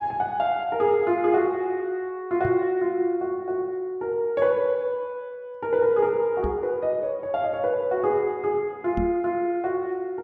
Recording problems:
microphone thump; at 2.5 s, at 6.5 s and at 9 s; peak 0 dB vs average level

